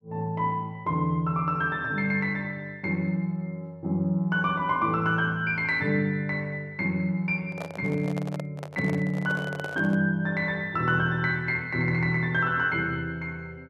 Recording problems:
microphone handling noise; from 7.5 to 10 s; peak -6 dB vs average level

